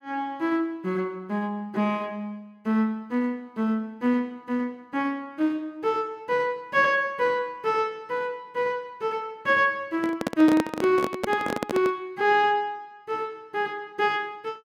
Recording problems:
handling noise; from 10 to 12 s; peak +3 dB vs average level

